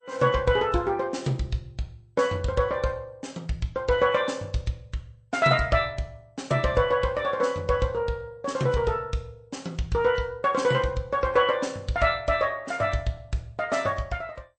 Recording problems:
lossy compression; MP2, then MP3, log-spectral distance 2 dB, nothing above 8.5 kHz

